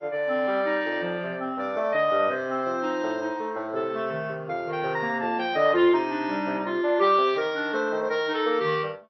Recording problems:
lossy codec; AAC, then MP2, log-spectral distance 2 dB, nothing above 5.8 kHz

